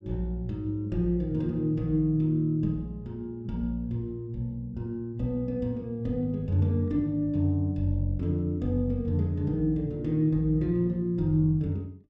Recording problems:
none

